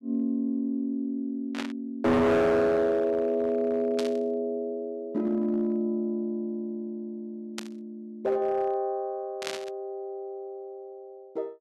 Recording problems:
distorted audio; hard clipping, signal-to-distortion ratio 7 dB
static burst; 4 times, first at 1.5 s; peak -1 dB vs average level

